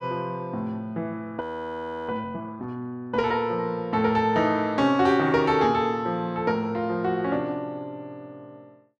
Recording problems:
frozen audio; at 1.5 s for 0.5 s

